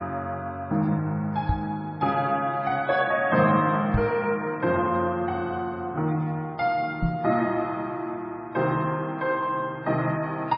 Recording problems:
codec artefacts; MP3, log-spectral distance 2 dB, nothing above 4.5 kHz
microphone thump; at 1.5 s, at 4 s and at 7 s; peak +5 dB vs average level

